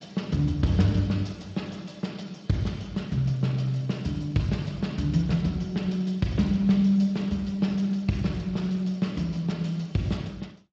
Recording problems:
lossy codec; Speex, log-spectral distance 3 dB, nothing above 17.7 kHz

